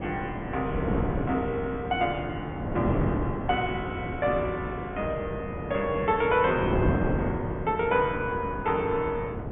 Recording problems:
low-pass filter; nothing above 3.5 kHz
wind noise; below 450 Hz, SNR 3 dB

